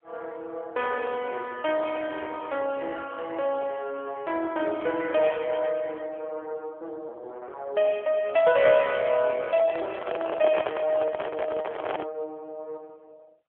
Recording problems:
telephone audio; 340 Hz to 3.1 kHz, AMR-NB
microphone handling noise; from 9.5 to 12 s; peak +2 dB vs average level

